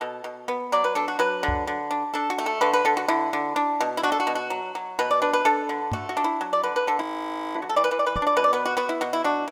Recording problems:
knock on the microphone; at 1.5 s, at 6 s and at 8 s; peak -2 dB vs average level
frozen audio; at 7 s for 0.5 s

